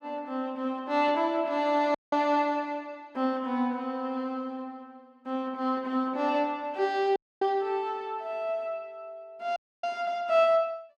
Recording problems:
audio cutting out; at 2 s, at 7 s and at 9.5 s

